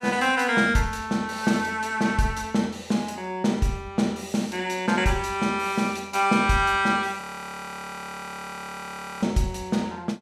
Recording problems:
audio freezing; at 7 s for 2 s

